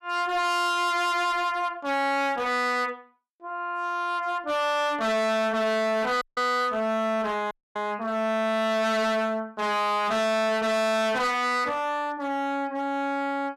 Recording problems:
distortion; hard clipping, signal-to-distortion ratio 6 dB
audio cutting out; at 6 s and at 7.5 s

